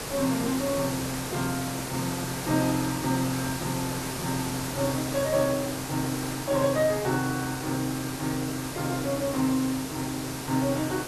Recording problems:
hiss; slope -4 dB per octave, SNR 5 dB

